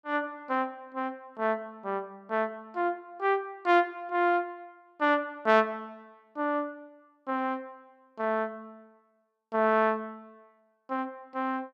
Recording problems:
none

